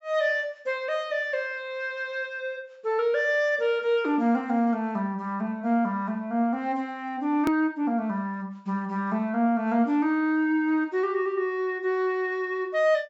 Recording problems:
low-pass filter; nothing above 8 kHz
click at an edit; at 7.5 s

